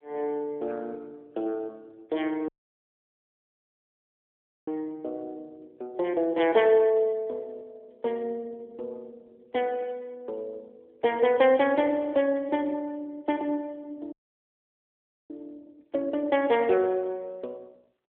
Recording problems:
phone line; 320 Hz to 3.4 kHz, AMR-NB
audio cutting out; at 2.5 s for 2 s and at 14 s for 1 s

